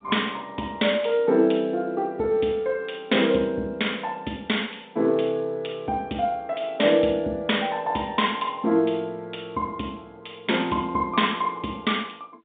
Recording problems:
telephone audio; 190 Hz to 3.7 kHz, G.711

